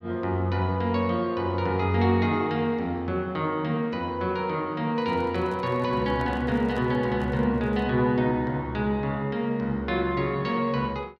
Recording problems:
handling noise; from 5 to 8 s; peak -10 dB vs average level

